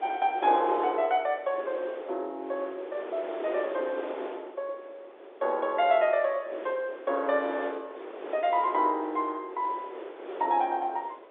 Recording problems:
phone line; 320 Hz to 3.8 kHz, G.711
wind noise; below 730 Hz, SNR 12 dB

